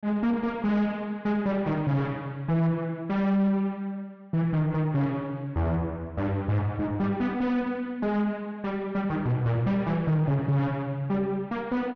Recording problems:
treble missing; nothing above 6.5 kHz
distortion; soft clipping, signal-to-distortion ratio 7 dB

